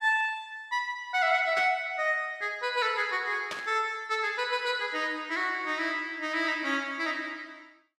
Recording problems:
static burst; at 1.5 s and at 3.5 s; peak -3 dB vs average level

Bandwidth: 14.5 kHz